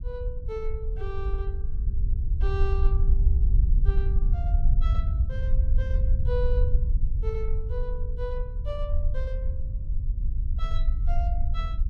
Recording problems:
low-frequency rumble; below 60 Hz, SNR -11 dB

